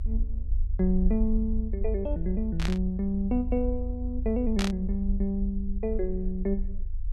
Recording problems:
low-frequency rumble; below 52 Hz, SNR 3 dB
burst of static; at 2.5 s and at 4.5 s; peak +1 dB vs average level

